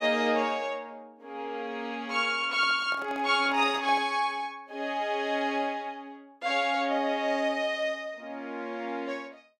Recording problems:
microphone handling noise; from 2.5 to 4 s; peak -10 dB vs average level

